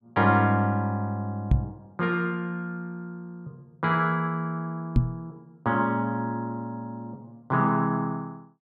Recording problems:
microphone bump; at 1.5 s and at 5 s; peak +9 dB vs average level

